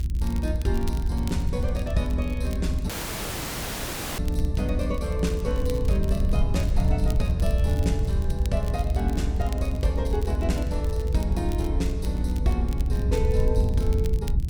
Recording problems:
electrical hum; 50 Hz, harmonics up to 350 Hz, SNR 17 dB
low-frequency rumble; below 76 Hz, SNR -3 dB
wind noise; below 110 Hz, SNR 9 dB
crackling; vinyl, SNR 17 dB
dropout; at 3 s for 1.5 s

